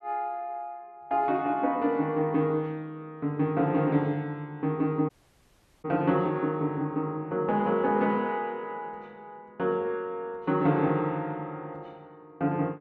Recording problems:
dropout; at 5 s for 1 s

